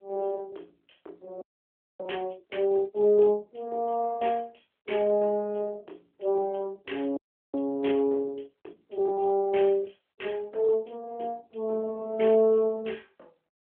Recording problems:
telephone audio; 260 Hz to 3.8 kHz, AMR-NB
frozen audio; at 1.5 s for 0.5 s and at 7 s

